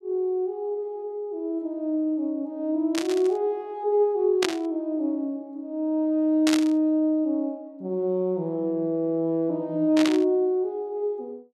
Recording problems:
static burst; 4 times, first at 3 s; peak +2 dB vs average level

